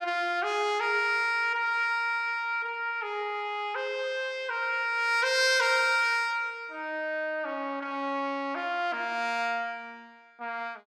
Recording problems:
none

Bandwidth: 15 kHz